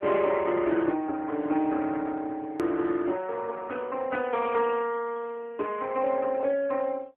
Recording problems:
telephone audio; 260 Hz to 3.4 kHz, AMR-NB
hard cut with a click; at 2.5 s

